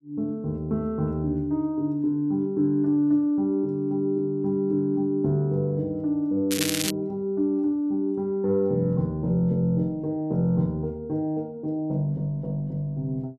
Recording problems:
crackle; at 6.5 s; loose cable, SNR 2 dB

